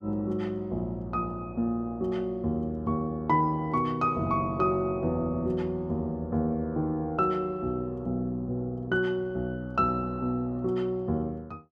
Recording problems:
none

